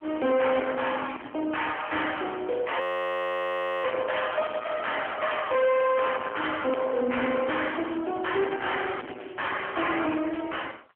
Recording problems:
phone line; 190 Hz to 3.3 kHz, AMR-NB
distorted audio; soft clipping, signal-to-distortion ratio 7 dB
audio freezing; at 3 s for 1 s

